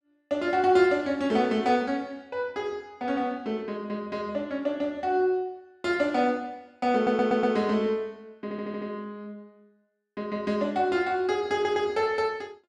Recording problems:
stutter; at 7 s, at 8.5 s and at 12 s

